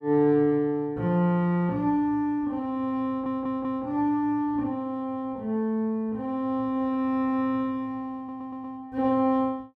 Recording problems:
audio stuttering; at 3 s and at 8 s

